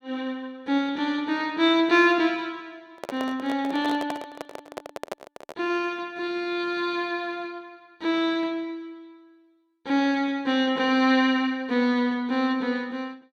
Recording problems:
handling noise; from 3 to 5.5 s; peak -3 dB vs average level

